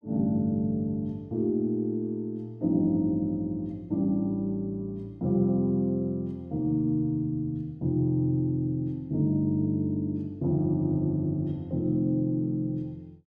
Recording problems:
none

